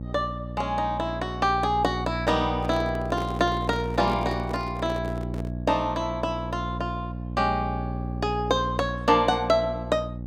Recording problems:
electrical hum; 60 Hz, harmonics up to 600 Hz, SNR 7 dB
microphone handling noise; from 2.5 to 5.5 s; peak -6 dB vs average level

